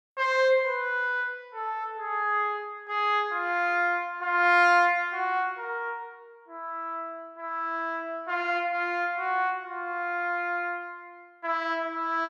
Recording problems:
none

